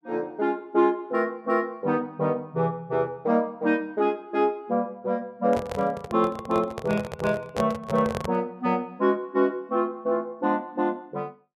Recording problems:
handling noise; from 5.5 to 8.5 s; peak 0 dB vs average level

